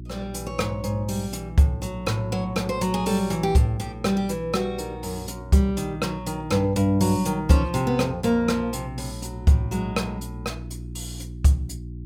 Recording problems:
electrical hum; 60 Hz, harmonics up to 360 Hz, SNR 13 dB

